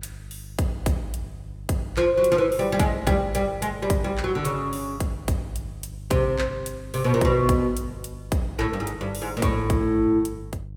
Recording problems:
hum; 50 Hz, harmonics up to 350 Hz, SNR 16 dB

